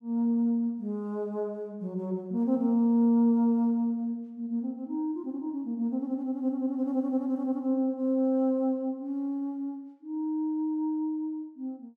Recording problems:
none

